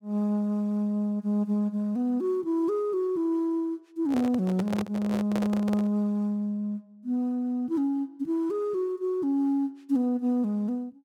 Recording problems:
microphone handling noise; from 4 to 6 s; peak -2 dB vs average level

